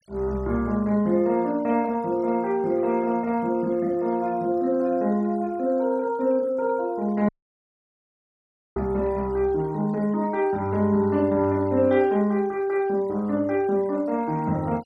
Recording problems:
noise reduction artefacts; signal-to-artefact ratio 27 dB
audio cutting out; at 7.5 s for 1.5 s

